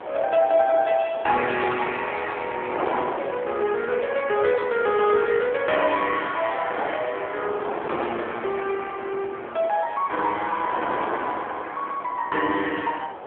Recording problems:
telephone audio; 260 Hz to 3.4 kHz, AMR-NB
wind on the microphone; below 1 kHz, SNR 9 dB

